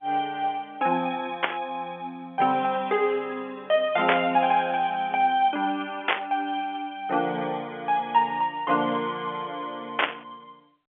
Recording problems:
telephone audio; 300 Hz to 3.4 kHz, G.711
burst of static; 4 times, first at 1.5 s; peak +8 dB vs average level

